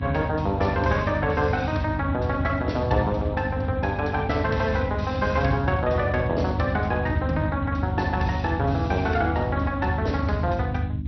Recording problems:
lossy compression; Speex, then MP2, log-spectral distance 3 dB, nothing above 5.8 kHz
mains hum; 50 Hz, harmonics up to 300 Hz, SNR 7 dB
rumble; below 98 Hz, strongest tone 78 Hz, SNR 5 dB

